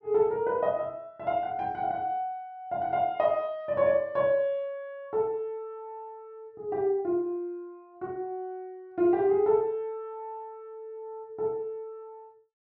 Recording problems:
none

